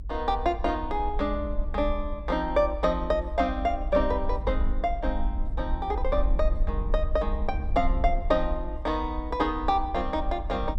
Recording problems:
low-frequency rumble; below 54 Hz, SNR 5 dB

